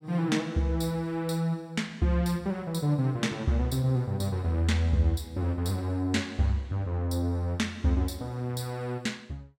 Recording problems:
none

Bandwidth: 17 kHz